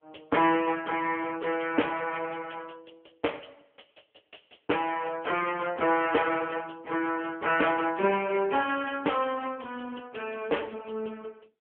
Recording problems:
telephone audio; 280 Hz to 3.2 kHz, AMR-NB

